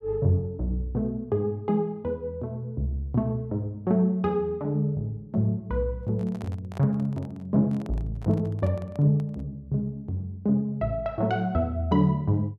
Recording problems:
handling noise; from 6 to 9.5 s; peak -10 dB vs average level

